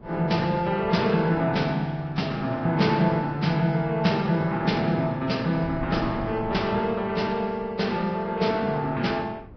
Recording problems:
lossy compression; Vorbis, log-spectral distance 3 dB, nothing above 5.5 kHz
wind on the microphone; below 340 Hz, SNR 19 dB

